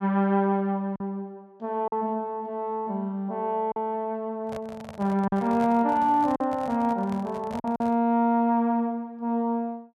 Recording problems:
lost packets; 3% of the sound replaced, filled with silence
handling noise; from 4.5 to 8 s; peak -9 dB vs average level

